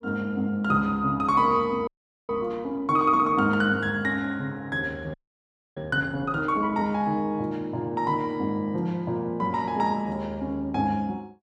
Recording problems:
audio freezing; at 2 s and at 5 s for 0.5 s

